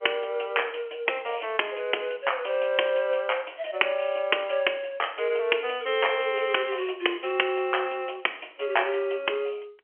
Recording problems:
phone line; 300 Hz to 3.2 kHz, G.711

